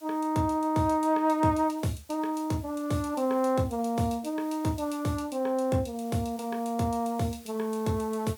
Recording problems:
background hiss; slope +1 dB per octave, SNR 24 dB

